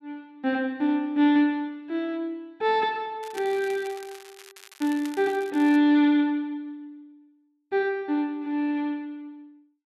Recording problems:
crackling; from 3 to 6 s; loose cable, SNR 21 dB

